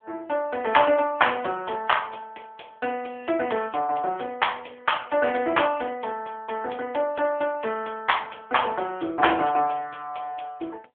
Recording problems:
telephone audio; 300 Hz to 3.3 kHz, AMR-NB

